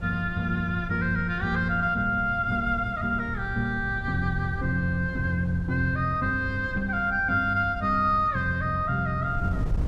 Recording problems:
wind on the microphone; below 120 Hz, SNR 11 dB

